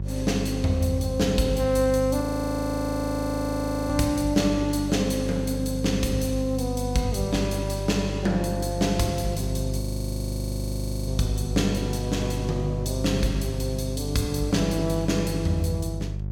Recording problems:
hum; 50 Hz, harmonics up to 400 Hz, SNR 5 dB
frozen audio; at 2 s for 1.5 s and at 10 s for 1.5 s

